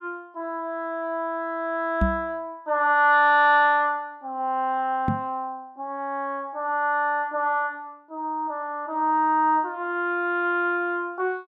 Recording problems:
microphone bump; at 2 s and at 5 s; peak +4 dB vs average level

